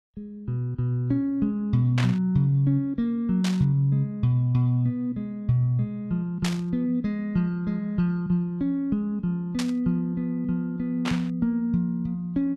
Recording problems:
burst of static; 5 times, first at 2 s; peak -1 dB vs average level

